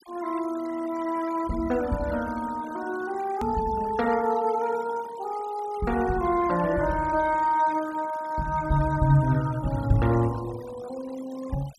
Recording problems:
noise reduction artefacts; signal-to-artefact ratio 18 dB
click at an edit; at 3.5 s

